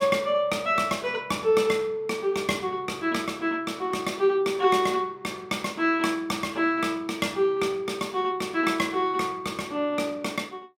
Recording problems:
none

